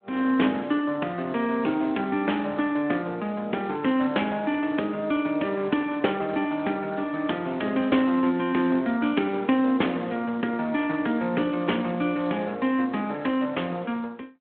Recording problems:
phone line; 220 Hz to 3.5 kHz, Speex

